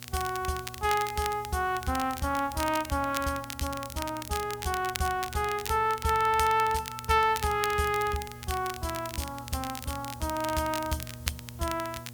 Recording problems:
hum; 60 Hz, harmonics up to 1.1 kHz, SNR 18 dB
hiss; slope +2 dB per octave, SNR 23 dB
crackling; vinyl, SNR 11 dB

